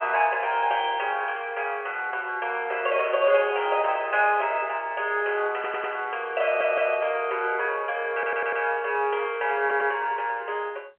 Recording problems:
phone line; 320 Hz to 3.2 kHz, G.711
static burst; at 3.5 s; peak -14 dB vs average level
audio stuttering; 4 times, first at 5.5 s

